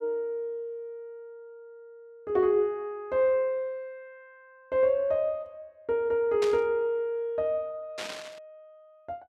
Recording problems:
static burst; at 6.5 s and at 8 s; peak -4 dB vs average level

